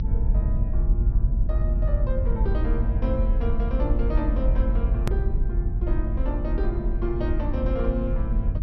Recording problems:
treble missing; nothing above 5.9 kHz
low-frequency rumble; below 62 Hz, strongest tone 42 Hz, SNR -6 dB
edit click; at 5 s

